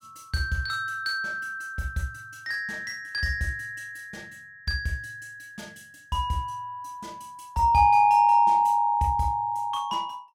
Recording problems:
none

